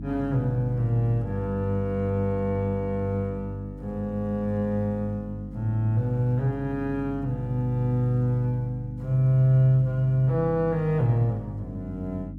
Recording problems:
mains hum; 50 Hz, harmonics up to 300 Hz, SNR 11 dB

